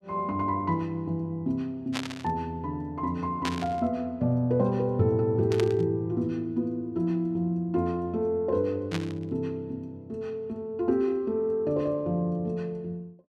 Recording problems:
static burst; 4 times, first at 2 s; peak 0 dB vs average level

